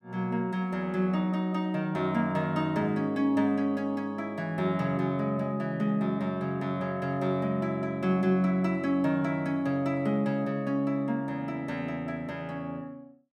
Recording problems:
none

